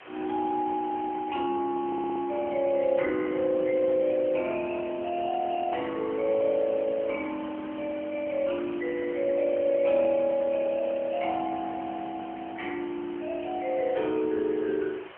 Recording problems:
phone line; 260 Hz to 2.8 kHz, AMR-NB
background hiss; SNR 18 dB
stutter; at 2 s

